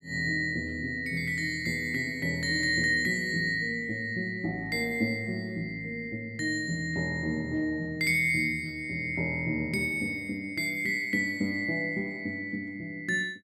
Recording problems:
none

